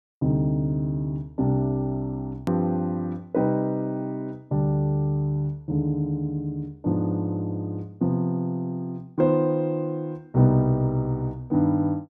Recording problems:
edit click; at 2.5 s

